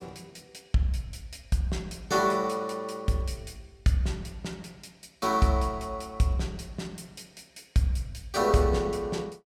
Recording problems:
none

